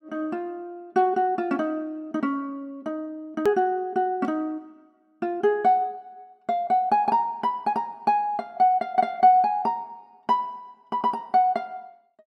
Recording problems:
edit click; at 3.5 s

